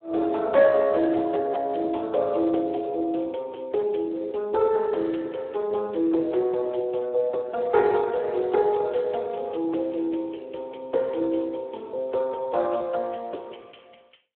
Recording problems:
phone line; 280 Hz to 3.7 kHz, Speex

